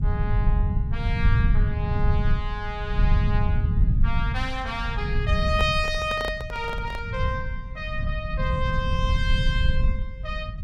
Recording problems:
rumble; below 100 Hz, SNR -4 dB
microphone handling noise; from 5.5 to 7 s; peak +1 dB vs average level

